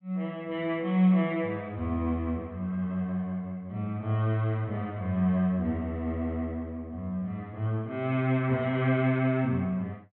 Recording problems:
treble cut off; nothing above 4 kHz

